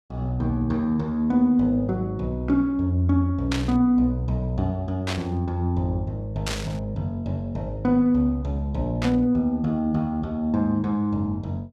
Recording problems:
burst of static; 4 times, first at 3.5 s; peak -2 dB vs average level

